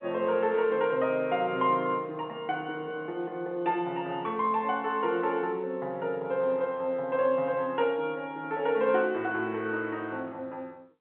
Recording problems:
telephone audio; 220 Hz to 3.6 kHz, G.711

